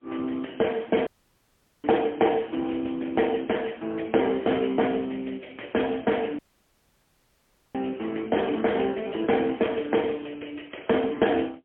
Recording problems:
phone line; 240 Hz to 3.4 kHz, AMR-NB, then MP3
audio cutting out; at 1 s for 1 s and at 6.5 s for 1.5 s

